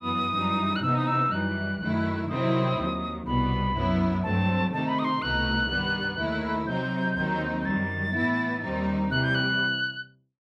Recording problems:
none

